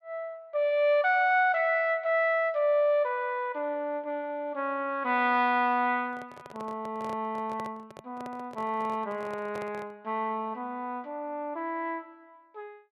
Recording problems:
handling noise; from 6 to 10 s; peak -9 dB vs average level

